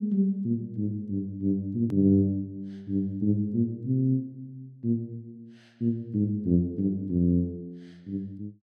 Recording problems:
edit click; at 2 s

